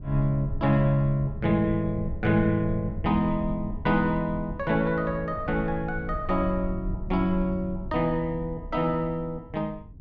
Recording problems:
rumble; below 96 Hz, SNR 11 dB

